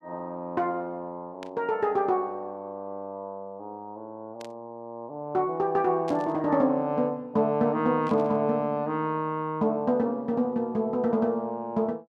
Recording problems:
static burst; 4 times, first at 1.5 s; peak -13 dB vs average level

